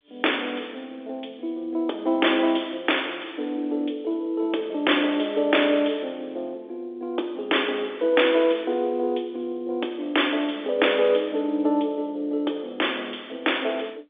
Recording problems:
phone line; 260 Hz to 3.6 kHz, G.711

